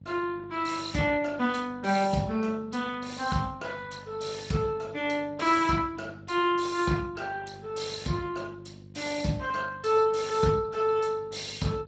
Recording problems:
lossy compression; Speex, log-spectral distance 5 dB, nothing above 7.8 kHz
hum; 50 Hz, harmonics up to 550 Hz, SNR 19 dB

